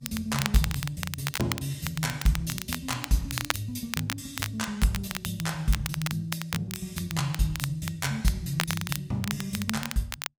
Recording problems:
lossy compression; Vorbis, log-spectral distance 3 dB, nothing above 15.1 kHz
crackling; vinyl, SNR 5 dB

